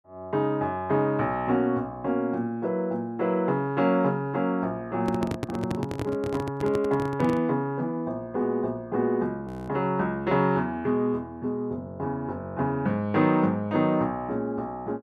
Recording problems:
handling noise; from 5 to 7.5 s; peak 0 dB vs average level
audio freezing; at 9.5 s

